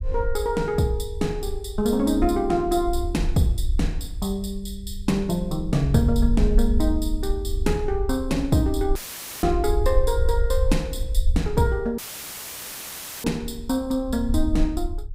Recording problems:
low-frequency rumble; below 60 Hz, SNR 4 dB
audio cutting out; at 9 s and at 12 s for 1.5 s; filled with static

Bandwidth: 15.5 kHz